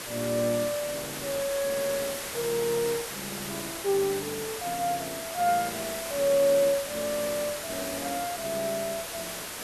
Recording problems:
background hiss; slope -2 dB per octave, SNR 5 dB

